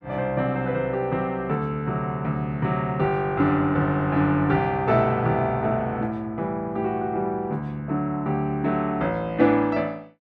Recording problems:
none

